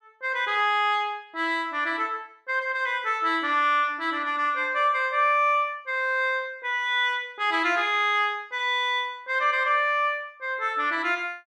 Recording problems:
none

